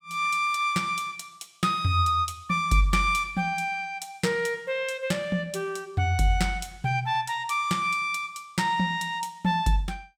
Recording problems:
none

